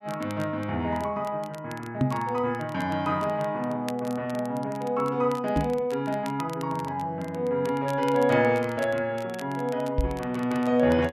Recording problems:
crackling; vinyl, SNR 21 dB
knock on the microphone; at 2 s, at 5.5 s and at 10 s; peak +7 dB vs average level

